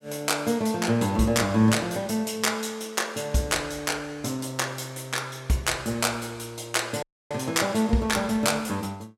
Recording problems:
dropout; at 7 s

